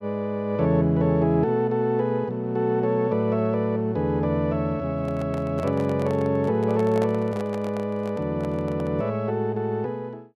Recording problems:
handling noise; from 5 to 9 s; peak -5 dB vs average level

